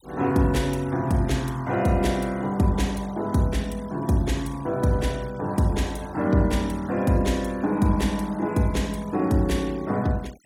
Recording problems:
denoising artefacts; signal-to-artefact ratio 23 dB

